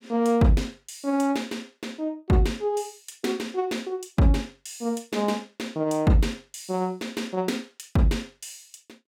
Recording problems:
none

